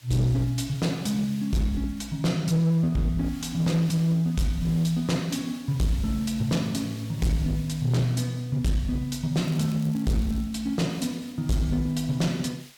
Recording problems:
distortion; hard clipping, uneven, signal-to-distortion ratio 11 dB
background hiss; slope +1 dB per octave, SNR 22 dB
crackling; from 9.5 to 10 s; loose cable, SNR 24 dB

